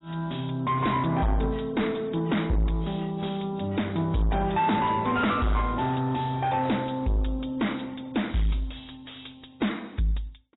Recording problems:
codec artefacts; AAC, log-spectral distance 7 dB, nothing above 3.9 kHz
distortion; soft clipping, signal-to-distortion ratio 6 dB

